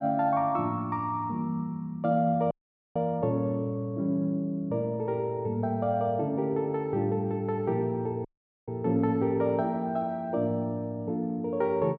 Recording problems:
dropout; at 2.5 s and at 8.5 s

